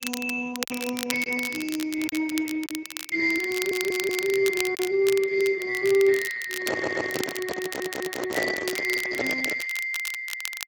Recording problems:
lossy codec; Speex, log-spectral distance 4 dB
crackle; vinyl, SNR 9 dB
packet loss; 2% of the sound replaced, filled with silence
stutter; at 3.5 s, at 6.5 s and at 7.5 s
microphone handling noise; from 6.5 to 9.5 s; peak +5 dB vs average level

